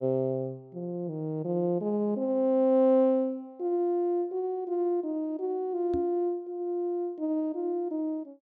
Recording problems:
knock on the microphone; at 6 s; peak -4 dB vs average level

